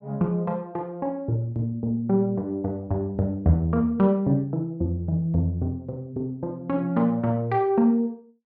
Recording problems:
none

